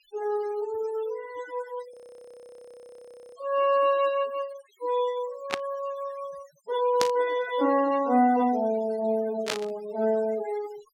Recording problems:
denoising artefacts; signal-to-artefact ratio 18 dB
frozen audio; at 2 s for 1.5 s
burst of static; at 5.5 s, at 7 s and at 9.5 s; peak +4 dB vs average level

